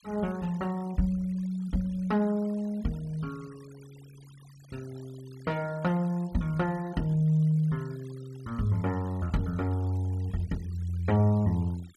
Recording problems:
noise reduction artefacts; signal-to-artefact ratio 26 dB

